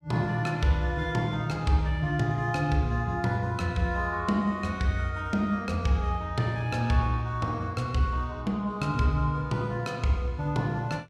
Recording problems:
none

